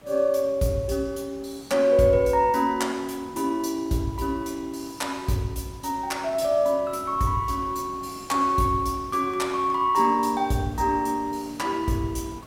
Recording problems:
hiss; slope -6 dB per octave, SNR 22 dB

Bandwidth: 16.5 kHz